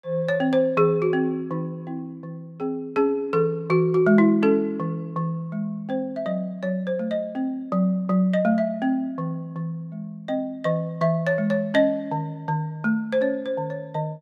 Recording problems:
none

